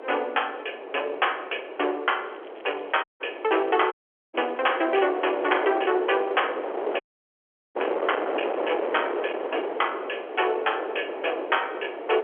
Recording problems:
phone line; 320 Hz to 3.3 kHz, G.711
distortion; soft clipping, signal-to-distortion ratio 13 dB
wind on the microphone; below 820 Hz, SNR 6 dB
crackle; from 2 to 5 s; loose cable, SNR 28 dB
audio cutting out; at 3 s, at 4 s and at 7 s for 1 s

